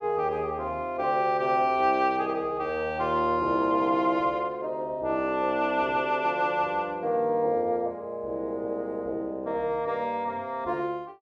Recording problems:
none

